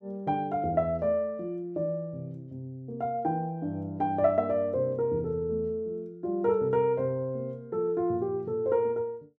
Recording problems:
none

